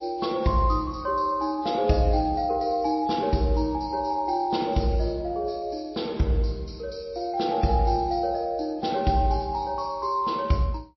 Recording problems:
lossy codec; MP3, log-spectral distance 3 dB, nothing above 5.7 kHz

